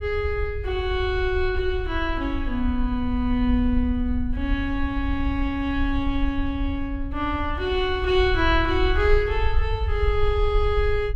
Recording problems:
rumble; below 64 Hz, SNR 5 dB

